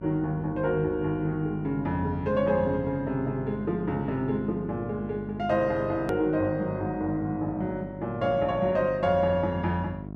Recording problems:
hum; 50 Hz, harmonics up to 1.1 kHz, SNR 11 dB
hard cut with a click; at 6 s

